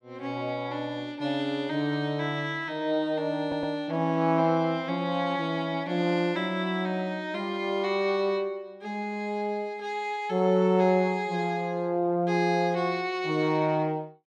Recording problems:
audio stuttering; at 3.5 s

